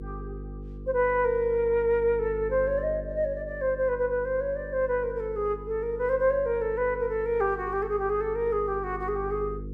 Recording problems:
hum; 50 Hz, harmonics up to 500 Hz, SNR 14 dB

